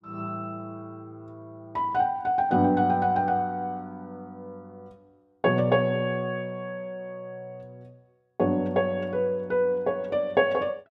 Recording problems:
none

